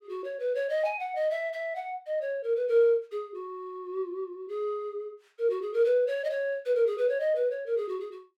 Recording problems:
none

